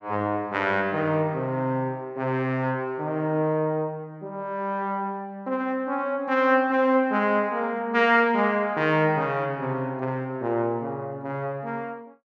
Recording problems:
none

